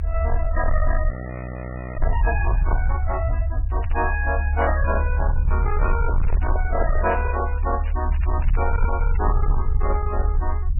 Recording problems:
lossy codec; MP3, log-spectral distance 2 dB, nothing above 2.5 kHz
distortion; soft clipping, signal-to-distortion ratio 10 dB
low-frequency rumble; below 72 Hz, SNR -3 dB
audio freezing; at 1 s for 1 s
crackle; at 3.5 s and from 5.5 to 9.5 s; loose cable, SNR 16 dB
handling noise; from 6 to 7.5 s; peak -1 dB vs average level

